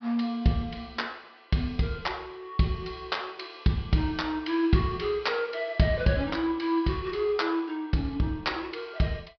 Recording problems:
treble cut off; nothing above 5.5 kHz

